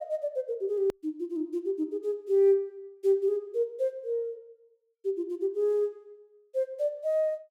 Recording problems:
edit click; at 1 s

